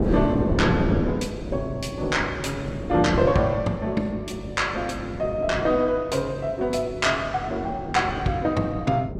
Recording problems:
hum; 50 Hz, harmonics up to 500 Hz, SNR 16 dB
wind on the microphone; below 390 Hz, SNR 5 dB

